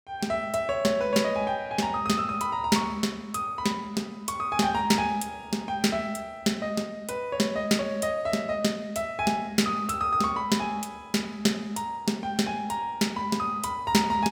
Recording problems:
none

